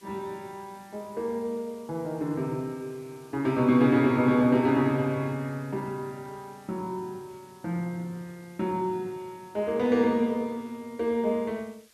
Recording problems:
hiss; SNR 29 dB

